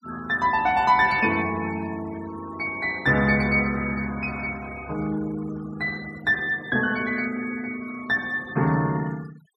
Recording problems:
denoising artefacts; signal-to-artefact ratio 21 dB

